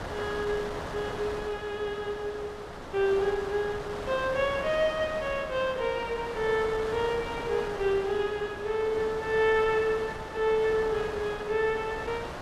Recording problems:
wind on the microphone; below 1.4 kHz, SNR 9 dB

